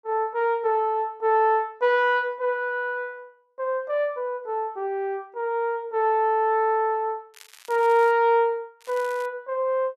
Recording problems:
crackle; at 7.5 s and at 9 s; loose cable, SNR 24 dB

